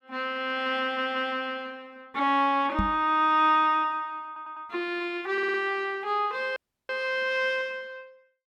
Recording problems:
audio stuttering; at 1 s, at 4.5 s and at 5.5 s
microphone thump; at 3 s; peak +2 dB vs average level
dropout; at 6.5 s

